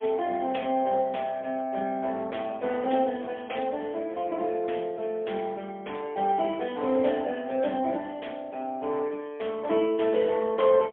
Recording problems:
phone line; 300 Hz to 3.4 kHz, AMR-NB, then MP3

